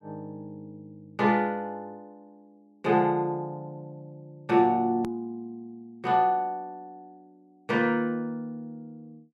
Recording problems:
click at an edit; at 5 s

